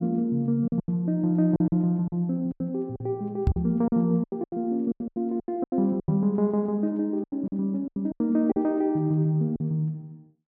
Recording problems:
lost packets; 13% of the sound replaced, filled with silence
knock on the microphone; at 3.5 s and at 6 s; peak +6 dB vs average level

